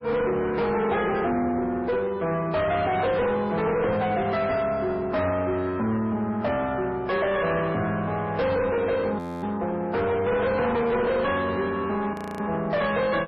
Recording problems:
lossy codec; MP3, log-spectral distance 2 dB, nothing above 13.1 kHz
distorted audio; soft clipping, signal-to-distortion ratio 6 dB
frozen audio; at 9 s and at 12 s

